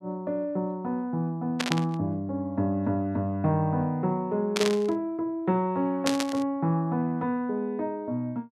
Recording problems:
static burst; at 1.5 s, at 4.5 s and at 6 s; peak +5 dB vs average level

